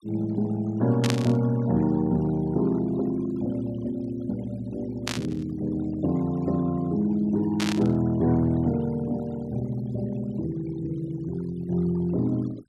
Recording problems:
noise reduction artefacts; signal-to-artefact ratio 22 dB
static burst; at 1 s, at 5 s and at 7.5 s; peak +2 dB vs average level

